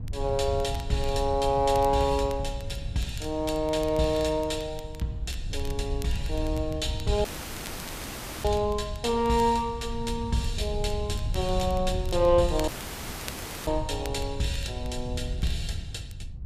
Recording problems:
wind noise; below 94 Hz, SNR 8 dB
crackle; vinyl, SNR 21 dB
dropout; at 7.5 s for 1 s and at 13 s for 1 s

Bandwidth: 14.5 kHz